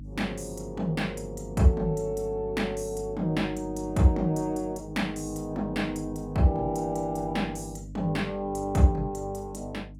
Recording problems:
electrical hum; 50 Hz, harmonics up to 300 Hz, SNR 14 dB

